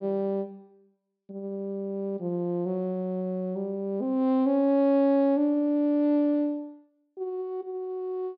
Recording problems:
low-pass filter; nothing above 5.5 kHz

